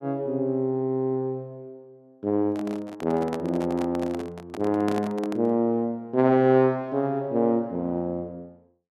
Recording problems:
handling noise; from 2.5 to 5.5 s; peak -3 dB vs average level

